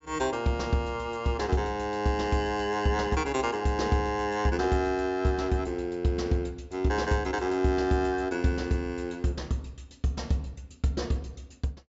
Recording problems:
treble cut off; nothing above 8 kHz

